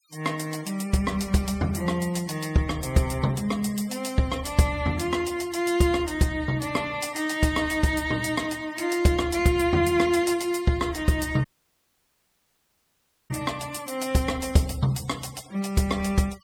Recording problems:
noise reduction artefacts; signal-to-artefact ratio 21 dB
audio cutting out; at 11 s for 2 s

